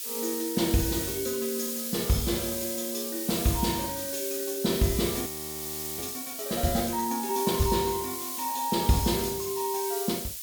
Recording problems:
hiss; slope +7 dB per octave, SNR 3 dB
audio freezing; at 5.5 s for 0.5 s

